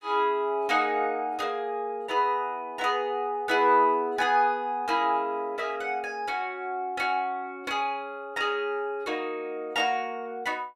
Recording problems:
none

